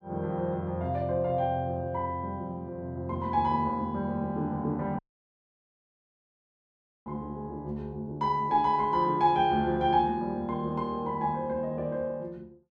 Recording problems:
audio cutting out; at 5 s for 2 s

